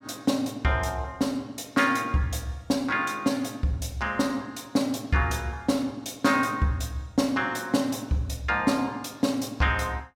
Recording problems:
none

